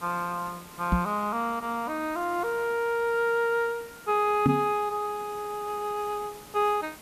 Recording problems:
hiss; slope -3 dB per octave, SNR 18 dB
microphone bump; at 1 s and at 4.5 s; peak +8 dB vs average level

